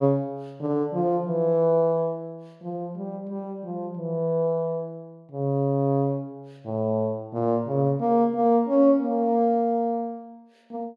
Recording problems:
none

